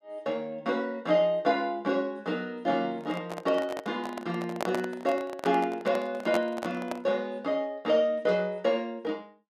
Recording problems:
microphone handling noise; from 3 to 7 s; peak +3 dB vs average level

